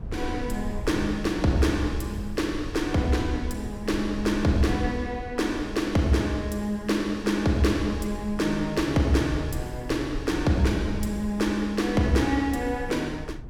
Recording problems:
wind noise; below 110 Hz, SNR 12 dB

